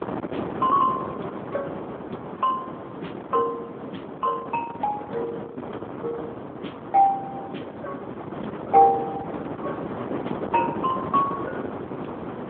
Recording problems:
telephone audio; 240 Hz to 2.9 kHz, AMR-NB
wind on the microphone; below 820 Hz, SNR 8 dB

